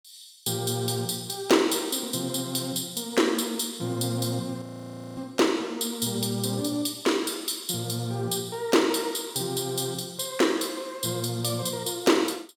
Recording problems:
frozen audio; at 4.5 s for 0.5 s

